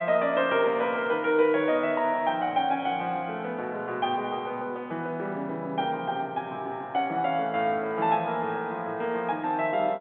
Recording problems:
phone line; 190 Hz to 3.7 kHz, G.711

